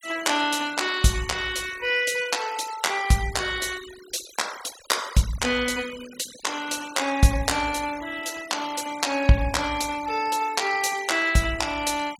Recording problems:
noise reduction artefacts; signal-to-artefact ratio 16 dB

